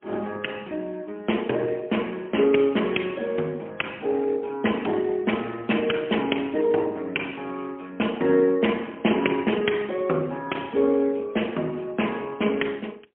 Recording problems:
telephone audio; 190 Hz to 3.3 kHz, AMR-NB, then MP3

